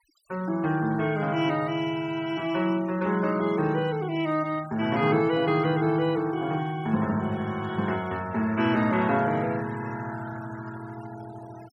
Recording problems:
noise reduction artefacts; signal-to-artefact ratio 21 dB

